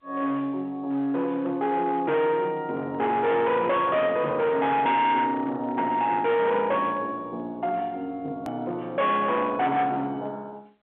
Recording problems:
phone line; 340 Hz to 3.8 kHz, G.711
distortion; hard clipping, signal-to-distortion ratio 10 dB
edit click; at 8.5 s

